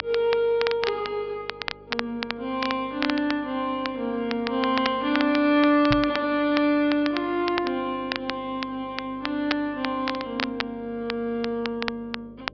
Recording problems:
treble cut off; nothing above 5.5 kHz
electrical hum; 50 Hz, harmonics up to 600 Hz, SNR 25 dB
crackle; vinyl, SNR 9 dB
microphone thump; at 6 s; peak +1 dB vs average level

